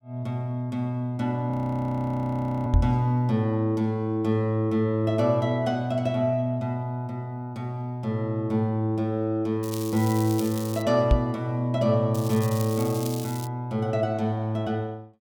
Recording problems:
frozen audio; at 1.5 s for 1 s
microphone bump; at 2.5 s and at 11 s; peak +8 dB vs average level
crackle; from 9.5 to 11 s and from 12 to 13 s; loose cable, SNR 13 dB

